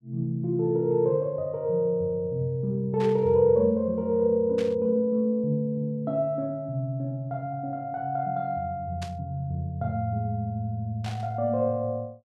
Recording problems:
static burst; 4 times, first at 3 s; peak -9 dB vs average level

